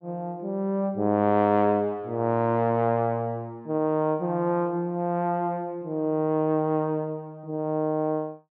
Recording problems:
low-pass filter; nothing above 8 kHz

